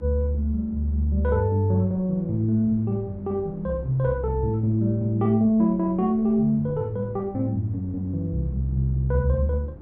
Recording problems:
electrical hum; 50 Hz, harmonics up to 350 Hz, SNR 26 dB
wind on the microphone; below 300 Hz, SNR 22 dB

